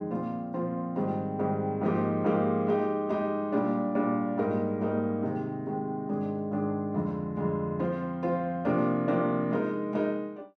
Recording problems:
none

